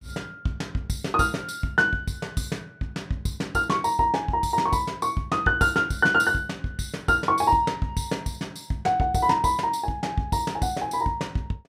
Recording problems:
none

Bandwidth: 15.5 kHz